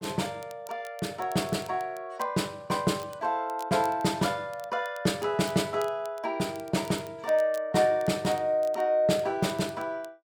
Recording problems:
crackling; vinyl, SNR 23 dB

